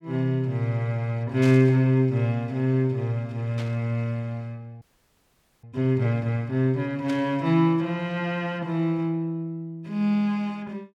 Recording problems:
burst of static; at 1.5 s, at 3.5 s and at 7 s; peak -10 dB vs average level
audio freezing; at 5 s for 1 s

